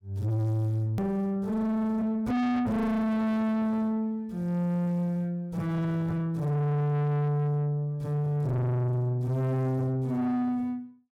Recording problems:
distortion; soft clipping, signal-to-distortion ratio 6 dB
edit click; at 1 s

